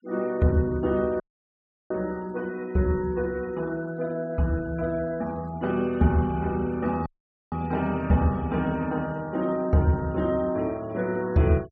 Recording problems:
low-pass filter; nothing above 8 kHz
denoising artefacts; signal-to-artefact ratio 26 dB
dropout; at 1 s for 0.5 s and at 7 s

